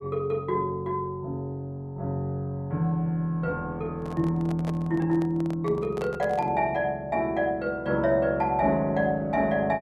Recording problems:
microphone handling noise; from 4 to 6.5 s; peak -6 dB vs average level

